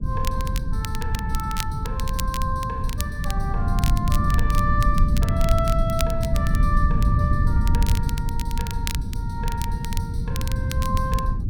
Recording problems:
rumble; below 110 Hz, SNR -5 dB
crackle; vinyl, SNR 7 dB

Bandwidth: 17 kHz